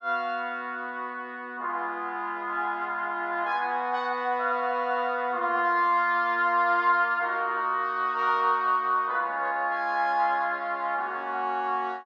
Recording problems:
none

